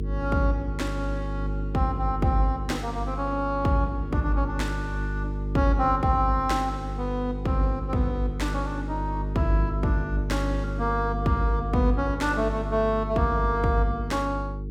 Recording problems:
hum; 50 Hz, harmonics up to 450 Hz, SNR 5 dB

